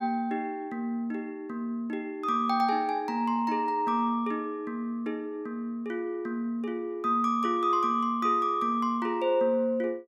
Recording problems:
none

